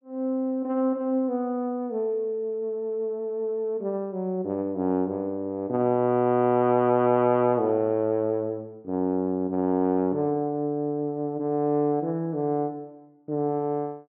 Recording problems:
treble missing; nothing above 3.3 kHz

